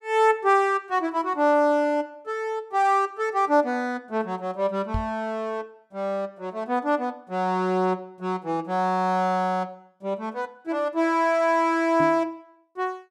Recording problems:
microphone bump; at 5 s and at 12 s; peak -1 dB vs average level

